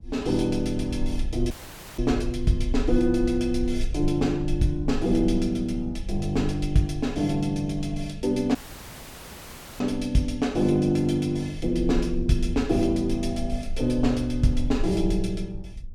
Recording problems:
low-frequency rumble; below 48 Hz, strongest tone 20 Hz, SNR 10 dB
audio cutting out; at 1.5 s and at 8.5 s for 1.5 s

